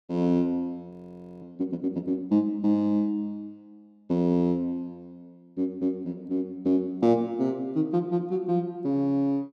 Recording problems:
frozen audio; at 1 s for 0.5 s

